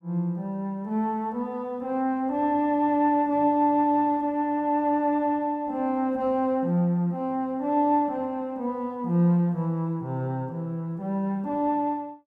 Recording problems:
none

